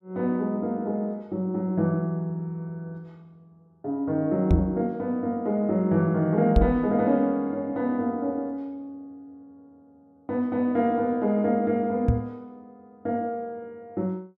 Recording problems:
knock on the microphone; at 4.5 s, at 6.5 s and at 12 s; peak +8 dB vs average level

